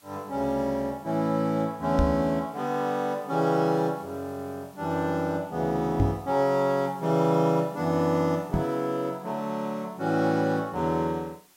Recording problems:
background hiss; slope 0 dB per octave, SNR 29 dB
microphone thump; at 2 s, at 6 s and at 8.5 s; peak +5 dB vs average level

